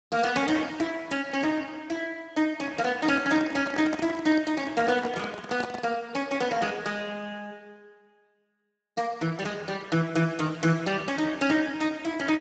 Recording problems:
lossy compression; Speex, log-spectral distance 5 dB, nothing above 7.6 kHz
microphone handling noise; from 3 to 6 s; peak -2 dB vs average level

